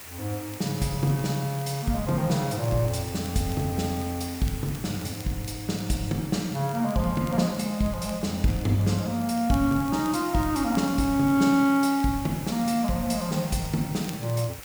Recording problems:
hiss; SNR 14 dB
crackle; vinyl, SNR 25 dB

